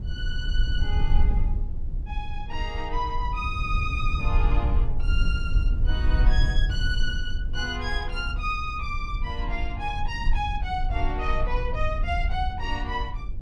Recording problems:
low-frequency rumble; below 58 Hz, SNR -3 dB

